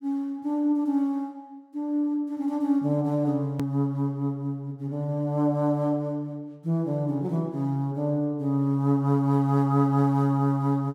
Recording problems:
hard cut with a click; at 3.5 s

